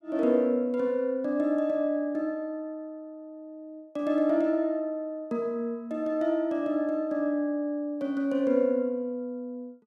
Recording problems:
none

